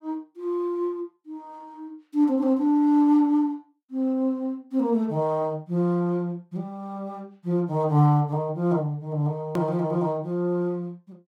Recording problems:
edit click; at 9.5 s

